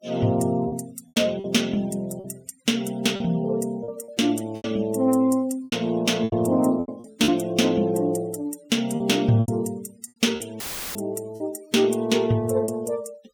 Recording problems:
denoising artefacts; signal-to-artefact ratio 24 dB
lost packets; 8% of the sound replaced, filled with repeated pitch periods
audio cutting out; at 11 s; filled with static

